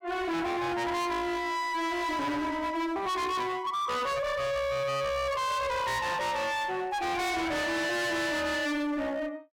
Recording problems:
distorted audio; hard clipping, signal-to-distortion ratio 6 dB

